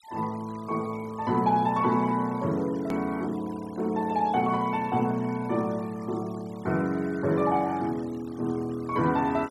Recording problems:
denoising artefacts; signal-to-artefact ratio 23 dB
hard cut with a click; at 3 s

